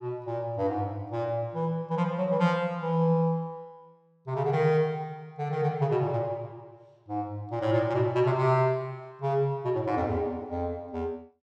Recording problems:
none

